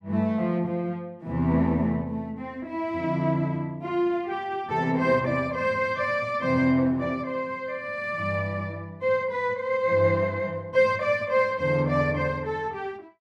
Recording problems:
none

